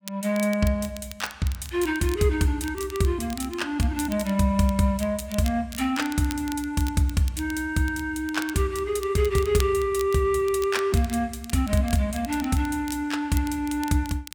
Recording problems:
crackling; vinyl, SNR 17 dB

